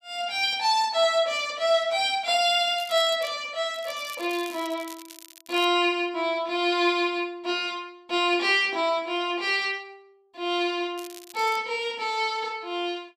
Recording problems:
crackle; at 3 s, from 3.5 to 5.5 s and at 11 s; loose cable, SNR 20 dB

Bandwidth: 14.5 kHz